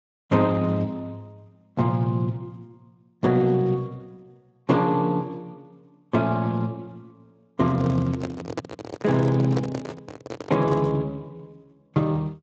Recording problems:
lossy compression; Speex, log-spectral distance 3 dB, nothing above 7.3 kHz
handling noise; from 7.5 to 11 s; peak -1 dB vs average level

